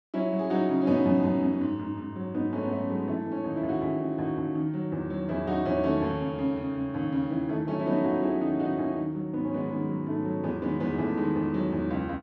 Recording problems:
none

